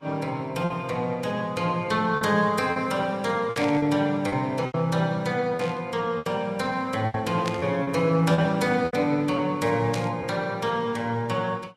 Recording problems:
lossy codec; Vorbis, log-spectral distance 2 dB, nothing above 13.5 kHz
packet loss; 7% of the sound replaced, filled with repeated pitch periods
burst of static; 4 times, first at 3.5 s; peak -4 dB vs average level

